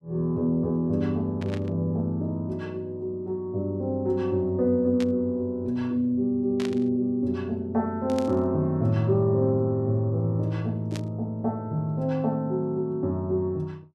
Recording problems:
static burst; 5 times, first at 1.5 s; peak -7 dB vs average level

